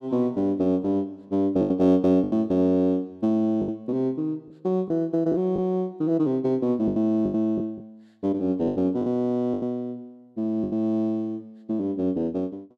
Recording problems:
packet loss; 7% of the sound replaced, filled with the last packet

